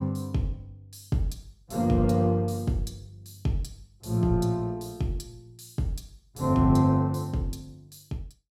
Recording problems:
none

